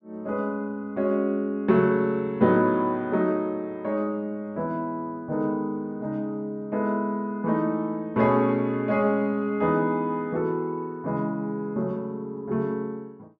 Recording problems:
none

